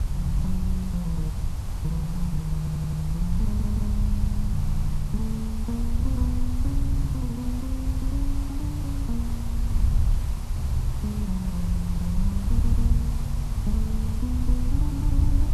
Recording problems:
background hiss; SNR 11 dB
wind noise; below 82 Hz, SNR -4 dB
stutter; 4 times, first at 2.5 s

